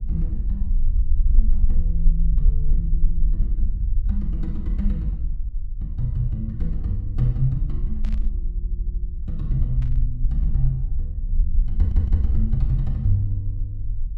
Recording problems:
low-frequency rumble; below 48 Hz, strongest tone 22 Hz, SNR -1 dB
static burst; at 8 s and at 10 s; peak -15 dB vs average level
audio stuttering; at 8.5 s and at 12 s

